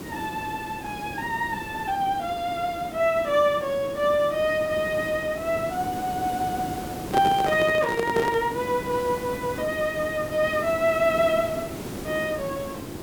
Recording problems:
hiss; SNR 10 dB
microphone handling noise; from 7 to 8.5 s; peak +3 dB vs average level

